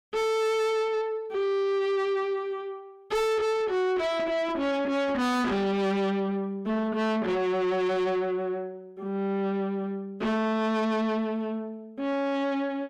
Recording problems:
distortion; soft clipping, signal-to-distortion ratio 7 dB

